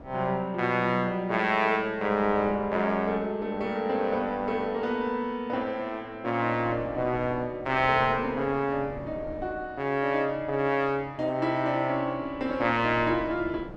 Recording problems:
wind noise; below 510 Hz, SNR 19 dB

